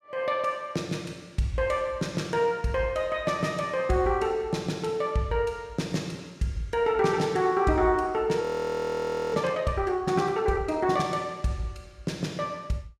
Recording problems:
frozen audio; at 8.5 s for 1 s

